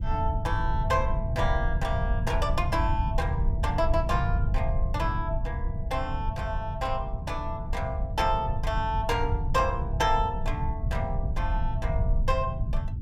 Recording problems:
rumble; below 98 Hz, SNR 0 dB

